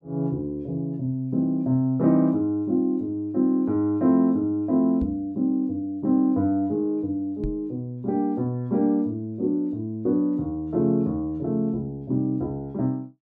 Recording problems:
microphone thump; at 5 s and at 7.5 s; peak -3 dB vs average level

